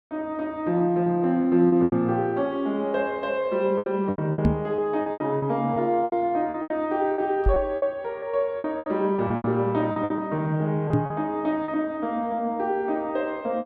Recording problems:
lost packets; 11% of the sound replaced, filled with repeated pitch periods
knock on the microphone; at 4.5 s, at 7.5 s and at 11 s; peak +6 dB vs average level

